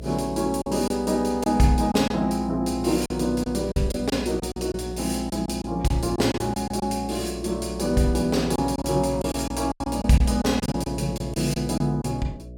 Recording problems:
hum; 60 Hz, harmonics up to 660 Hz, SNR 12 dB
lost packets; 8% of the sound replaced, filled with silence

